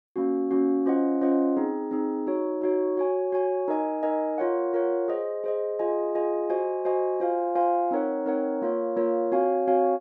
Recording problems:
none

